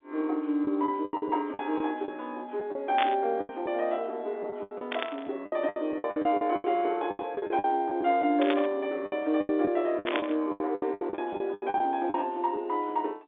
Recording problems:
telephone audio; 260 Hz to 3.8 kHz, G.711
lost packets; 15% of the sound replaced, filled with the last packet
static burst; 4 times, first at 3 s; peak +3 dB vs average level

